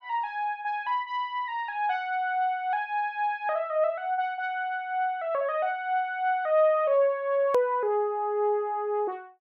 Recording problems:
edit click; at 7.5 s

